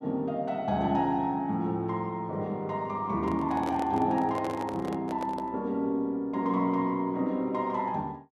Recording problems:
microphone handling noise; from 3 to 5.5 s; peak -4 dB vs average level

